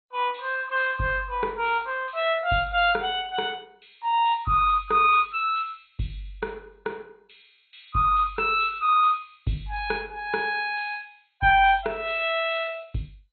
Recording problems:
lossy compression; MP2, log-spectral distance 5 dB, nothing above 3.8 kHz

